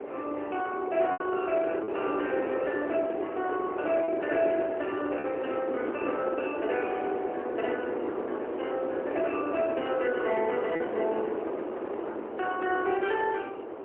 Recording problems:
phone line; 280 Hz to 3.1 kHz, AMR-NB, then MP3
wind noise; below 610 Hz, SNR 3 dB
packet loss; 1.8% of the sound replaced, filled with repeated pitch periods

